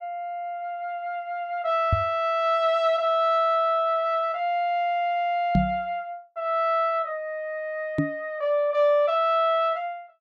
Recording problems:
microphone bump; at 2 s, at 5.5 s and at 8 s; peak +5 dB vs average level

